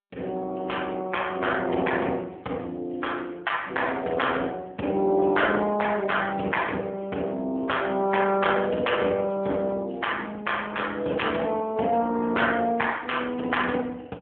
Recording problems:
phone line; 170 Hz to 3.4 kHz, AMR-NB

